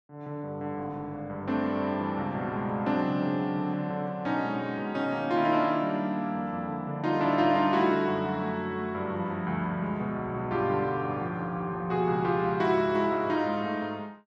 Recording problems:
none

